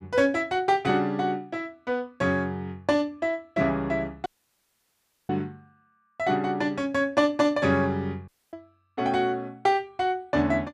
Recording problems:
dropout; at 4.5 s for 1 s and at 8.5 s

